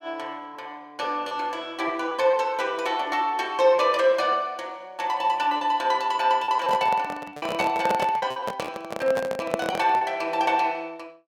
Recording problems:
packet loss; 5% of the sound replaced, filled with repeated pitch periods
microphone handling noise; from 6.5 to 10 s; peak +3 dB vs average level

